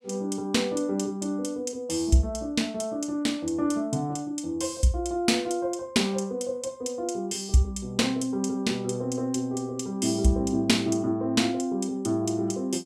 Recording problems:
none

